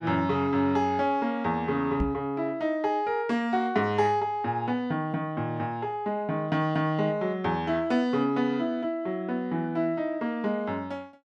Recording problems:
microphone bump; at 2 s; peak +2 dB vs average level

